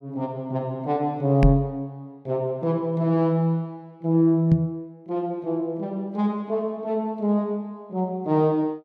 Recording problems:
microphone bump; at 1.5 s and at 4.5 s; peak +8 dB vs average level

